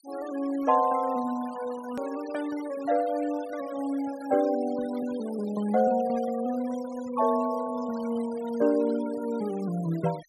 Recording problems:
noise reduction artefacts; signal-to-artefact ratio 19 dB
edit click; at 2 s

